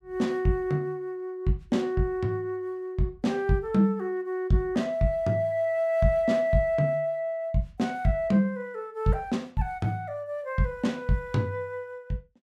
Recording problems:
none

